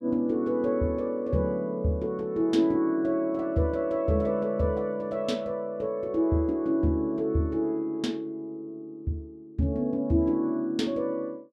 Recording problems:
none

